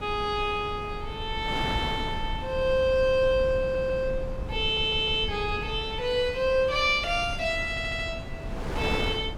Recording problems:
rumble; below 110 Hz, SNR 12 dB
wind on the microphone; below 870 Hz, SNR 13 dB
audio stuttering; at 3.5 s, at 4.5 s and at 7.5 s

